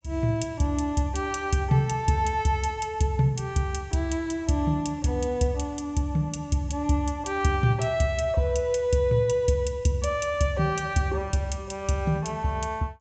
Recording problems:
treble missing; nothing above 8 kHz

